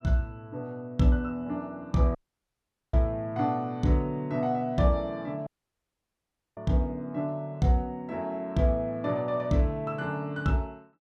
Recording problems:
audio cutting out; at 2 s for 1 s and at 5.5 s for 1 s

